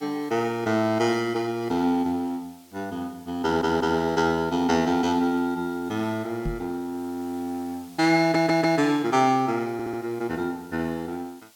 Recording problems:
background hiss; slope +1 dB per octave, SNR 27 dB
audio stuttering; at 3.5 s, at 8 s and at 9.5 s
knock on the microphone; at 6.5 s; peak -2 dB vs average level

